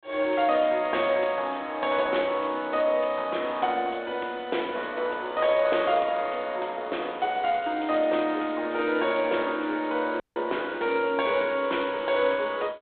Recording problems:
phone line; 260 Hz to 3.8 kHz, G.726
dropout; at 10 s

